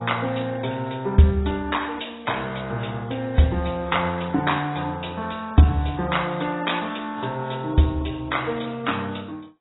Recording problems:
lossy codec; MP2, then AAC, log-spectral distance 6 dB, nothing above 3.8 kHz

